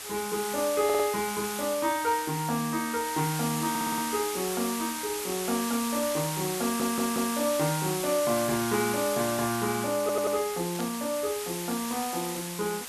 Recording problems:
background hiss; slope +1 dB per octave, SNR 5 dB
stutter; 4 times, first at 1 s
static burst; at 11 s; peak -8 dB vs average level

